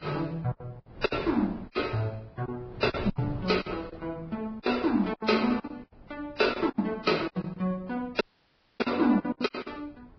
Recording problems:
treble cut off; nothing above 5.3 kHz
lossy compression; AAC, then Vorbis, log-spectral distance 4 dB
wind noise; below 400 Hz, SNR 18 dB
lost packets; 13% of the sound replaced, filled with silence
dropout; at 8 s for 0.5 s

